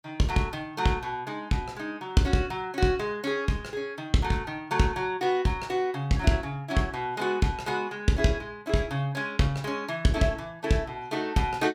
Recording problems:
none

